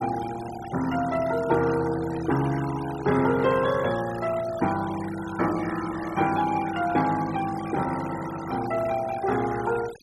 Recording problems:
noise reduction artefacts; signal-to-artefact ratio 14 dB

